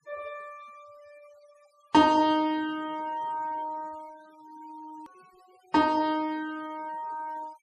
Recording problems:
denoising artefacts; signal-to-artefact ratio 26 dB
edit click; at 5 s

